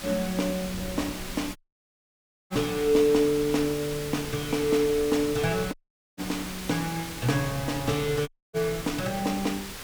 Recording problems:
background hiss; slope -1 dB per octave, SNR 10 dB
wind noise; below 210 Hz, SNR 18 dB
dropout; at 1.5 s for 1 s, at 5.5 s and at 8.5 s

